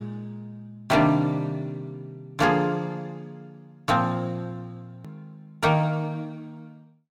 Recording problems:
distortion; soft clipping, signal-to-distortion ratio 11 dB
edit click; at 5 s

